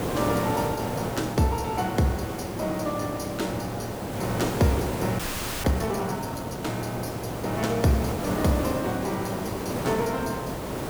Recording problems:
background hiss; slope -7 dB per octave, SNR 3 dB
audio freezing; at 5 s

